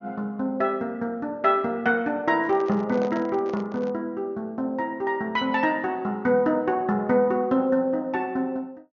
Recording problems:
low-pass filter; nothing above 6.8 kHz
microphone handling noise; from 2.5 to 4 s; peak -6 dB vs average level

